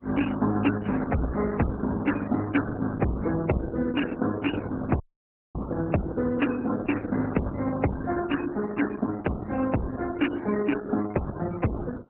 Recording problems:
lossy codec; MP3, then Opus, log-spectral distance 5 dB, nothing above 2.8 kHz
distorted audio; hard clipping, signal-to-distortion ratio 11 dB
dropout; at 5 s for 0.5 s

